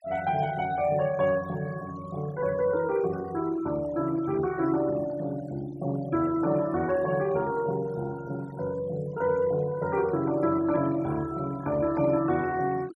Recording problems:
noise reduction artefacts; signal-to-artefact ratio 19 dB

